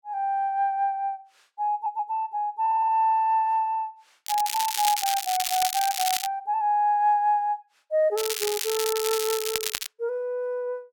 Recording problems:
stutter; at 1.5 s and at 2.5 s
crackling; from 4.5 to 6.5 s and from 8 to 10 s; loose cable, SNR 3 dB

